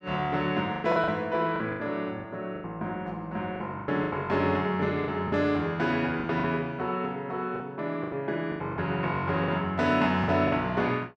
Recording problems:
lost packets; 10% of the sound replaced, filled with the last packet

